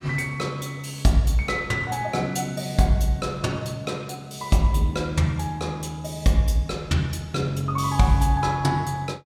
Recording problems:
none

